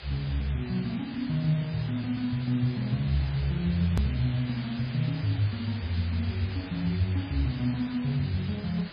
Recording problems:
codec artefacts; MP3, log-spectral distance 9 dB, nothing above 13.1 kHz
background hiss; SNR 14 dB
hard cut with a click; at 4 s

